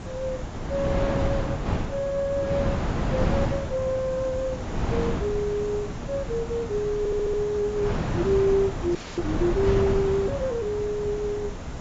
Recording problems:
lossy codec; AAC, log-spectral distance 6 dB
background hiss; slope +1 dB per octave, SNR 23 dB
wind noise; below 460 Hz, SNR 3 dB
audio stuttering; at 7 s
frozen audio; at 9 s

